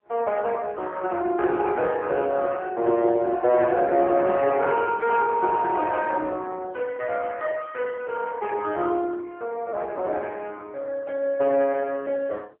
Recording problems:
phone line; 300 Hz to 3.5 kHz, AMR-NB

